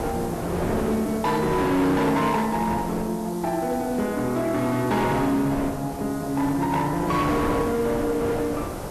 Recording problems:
lossy codec; AAC, log-spectral distance 2 dB, nothing above 13.1 kHz
distorted audio; hard clipping, signal-to-distortion ratio 10 dB
hiss; SNR 19 dB
wind noise; below 810 Hz, SNR 8 dB

